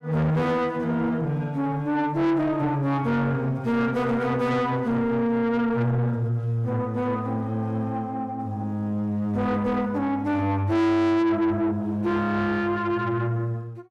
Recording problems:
distortion; soft clipping, signal-to-distortion ratio 7 dB

